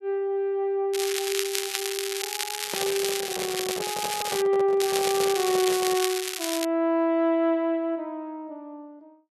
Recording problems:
crackle; from 1 to 4.5 s and from 5 to 6.5 s; loose cable, SNR 3 dB
microphone handling noise; from 2.5 to 6 s; peak -3 dB vs average level

